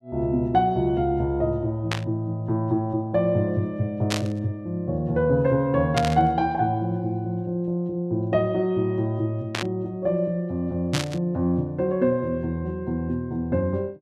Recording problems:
static burst; 5 times, first at 2 s; peak +2 dB vs average level

